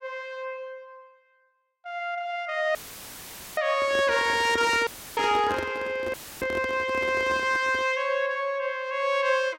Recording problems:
audio cutting out; at 3 s for 1 s, at 5 s and at 6 s; filled with static
microphone handling noise; from 4 to 8 s; peak -3 dB vs average level

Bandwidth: 16.5 kHz